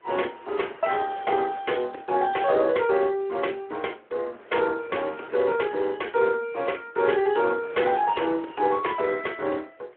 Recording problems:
telephone audio; 280 Hz to 3.3 kHz, Speex
wind on the microphone; below 1.6 kHz, SNR 22 dB

